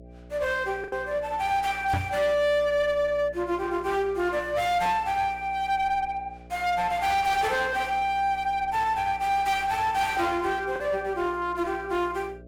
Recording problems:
distortion; hard clipping, uneven, signal-to-distortion ratio 9 dB
hum; 60 Hz, harmonics up to 660 Hz, SNR 21 dB
packet loss; 1% of the sound replaced, filled with the last packet
knock on the microphone; at 2 s; peak +2 dB vs average level

